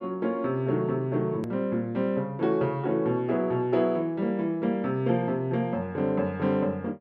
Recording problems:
click at an edit; at 1.5 s

